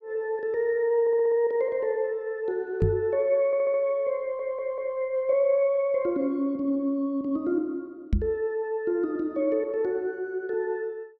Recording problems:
stutter; at 1 s, at 3.5 s and at 4 s
microphone bump; at 3 s and at 8 s; peak +5 dB vs average level

